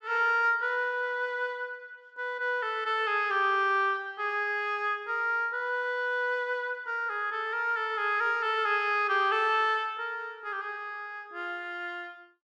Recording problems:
none

